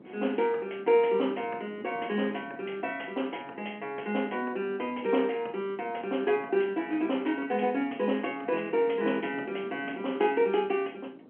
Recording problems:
phone line; 220 Hz to 3.2 kHz, G.711
wind on the microphone; below 430 Hz, SNR 19 dB

